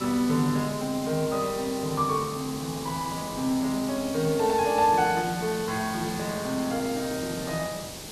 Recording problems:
background hiss; SNR 10 dB

